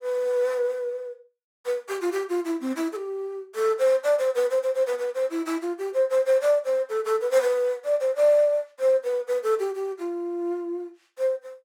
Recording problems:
none

